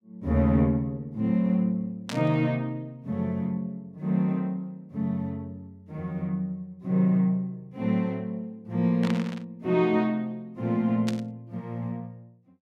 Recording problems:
burst of static; at 2 s, at 9 s and at 11 s; peak -4 dB vs average level

